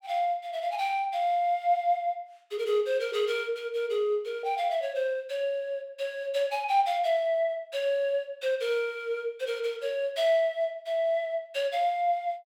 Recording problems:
none

